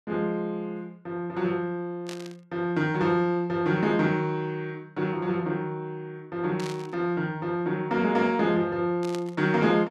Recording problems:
static burst; at 2 s, at 6.5 s and at 9 s; peak -8 dB vs average level

